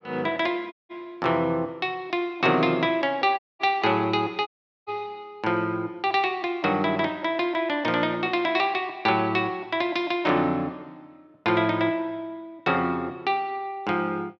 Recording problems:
dropout; at 0.5 s, at 3.5 s and at 4.5 s

